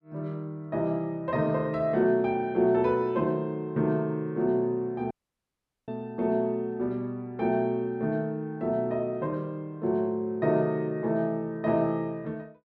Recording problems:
dropout; at 5 s for 1 s

